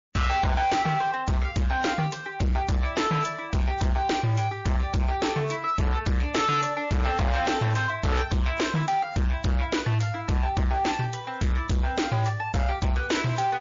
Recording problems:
lossy codec; MP3, log-spectral distance 3 dB
distorted audio; hard clipping, signal-to-distortion ratio 7 dB

